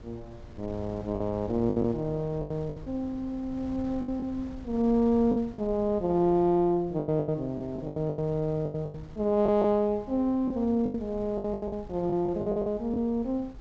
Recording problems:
treble cut off; nothing above 8 kHz
wind on the microphone; below 170 Hz, SNR 19 dB
lost packets; 11% of the sound replaced, filled with the last packet

